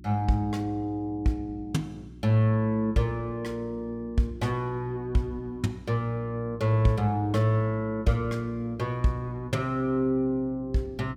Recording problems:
hum; 60 Hz, harmonics up to 360 Hz, SNR 19 dB

